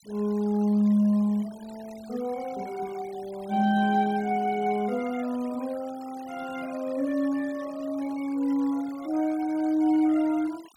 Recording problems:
noise reduction artefacts; signal-to-artefact ratio 23 dB

